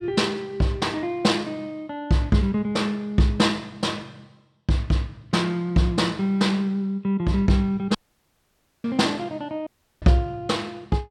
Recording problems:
dropout; at 8 s for 1 s and at 9.5 s

